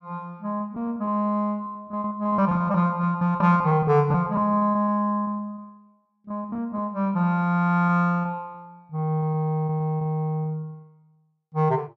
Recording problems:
packet loss; 16% of the sound replaced, filled with repeated pitch periods

